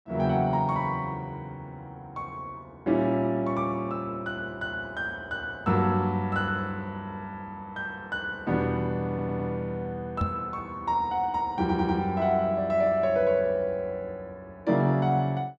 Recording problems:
stutter; at 9 s and at 12 s
microphone thump; at 10 s; peak +2 dB vs average level

